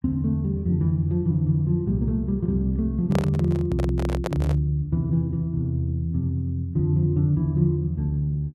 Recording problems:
handling noise; from 3 to 4.5 s; peak -1 dB vs average level

